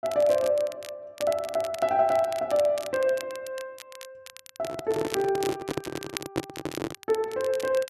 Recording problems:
crackle; vinyl, SNR 15 dB
handling noise; from 4.5 to 7 s; peak +2 dB vs average level

